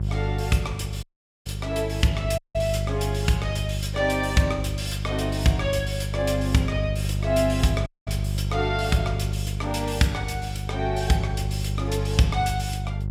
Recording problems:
hum; 50 Hz, harmonics up to 400 Hz, SNR 3 dB
dropout; at 1 s, at 2.5 s and at 8 s

